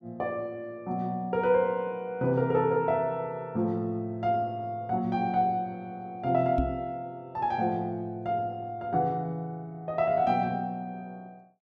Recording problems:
microphone thump; at 6.5 s; peak +3 dB vs average level

